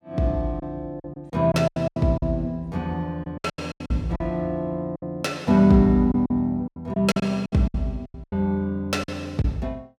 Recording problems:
lost packets; 13% of the sound replaced, filled with silence

